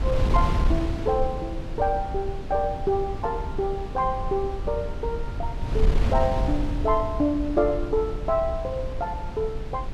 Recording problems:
wind noise; below 98 Hz, SNR 3 dB

